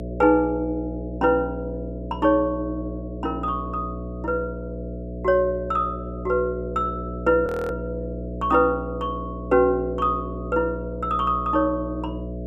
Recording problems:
hum; 60 Hz, harmonics up to 660 Hz, SNR 9 dB
frozen audio; at 7.5 s

